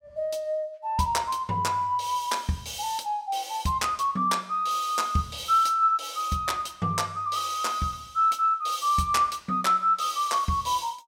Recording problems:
none

